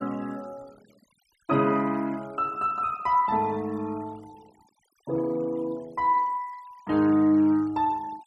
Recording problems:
denoising artefacts; signal-to-artefact ratio 26 dB

